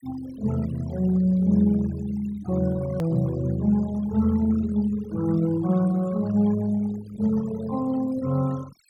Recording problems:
denoising artefacts; signal-to-artefact ratio 19 dB
click at an edit; at 3 s

